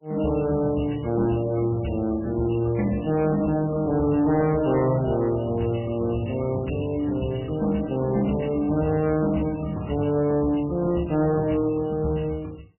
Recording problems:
lossy compression; MP3, log-spectral distance 5 dB, nothing above 2.9 kHz
distorted audio; soft clipping, signal-to-distortion ratio 11 dB

